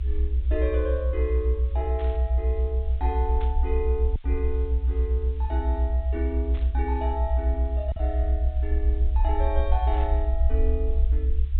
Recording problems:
treble missing; nothing above 4 kHz
background hiss; SNR 27 dB
rumble; below 66 Hz, SNR -7 dB
packet loss; 1.1% of the sound replaced, filled with silence
static burst; 4 times, first at 2 s; peak -9 dB vs average level

